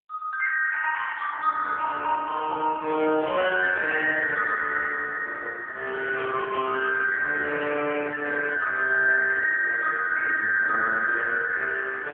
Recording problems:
telephone audio; 340 Hz to 2.6 kHz, AMR-NB

